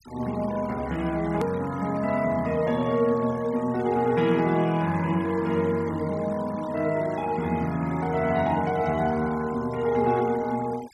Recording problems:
noise reduction artefacts; signal-to-artefact ratio 20 dB
edit click; at 1.5 s

